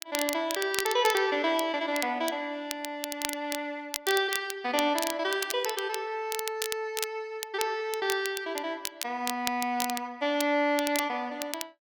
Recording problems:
crackling; vinyl, SNR 7 dB

